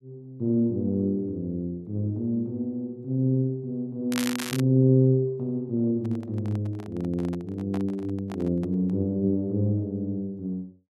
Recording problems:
crackle; at 4 s; loose cable, SNR 7 dB
microphone handling noise; from 6 to 9 s; peak -8 dB vs average level

